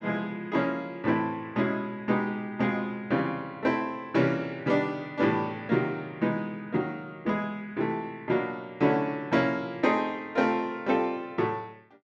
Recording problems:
none

